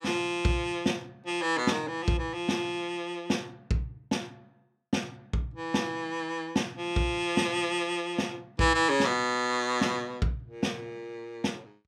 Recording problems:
none

